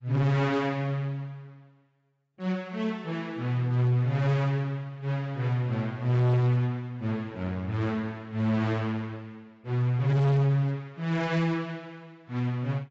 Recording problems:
lossy codec; AAC, log-spectral distance 2 dB, nothing above 7.6 kHz
distortion; hard clipping, signal-to-distortion ratio 7 dB

